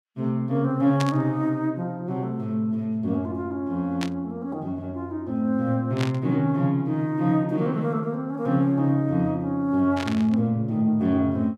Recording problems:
burst of static; 4 times, first at 1 s; peak -2 dB vs average level

